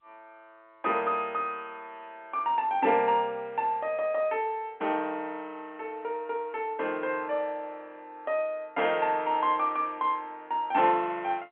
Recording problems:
phone line; 240 Hz to 3.4 kHz, G.711

